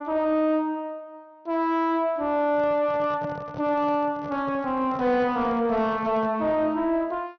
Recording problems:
treble cut off; nothing above 6.1 kHz
distortion; soft clipping, signal-to-distortion ratio 11 dB
microphone handling noise; from 2.5 to 6.5 s; peak -7 dB vs average level

